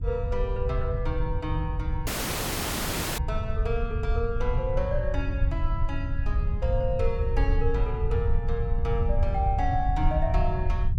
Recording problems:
low-frequency rumble; below 86 Hz, SNR -2 dB
audio cutting out; at 2 s for 1 s

